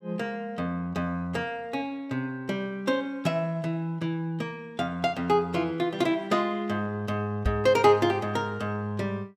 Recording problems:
microphone thump; at 7.5 s; peak +4 dB vs average level

